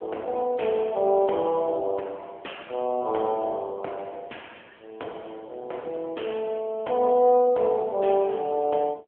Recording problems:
telephone audio; 280 Hz to 3.5 kHz, AMR-NB

